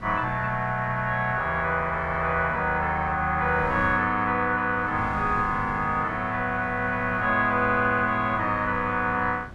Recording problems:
wind noise; below 370 Hz, SNR 17 dB

